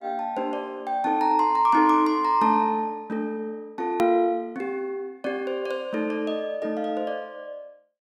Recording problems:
hard cut with a click; at 4 s

